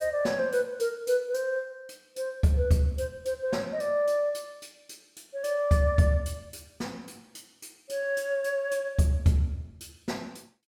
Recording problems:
none

